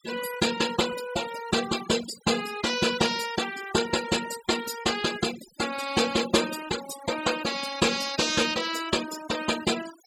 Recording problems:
denoising artefacts; signal-to-artefact ratio 9 dB

